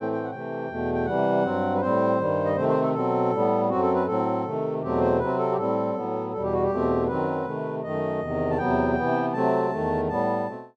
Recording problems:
none

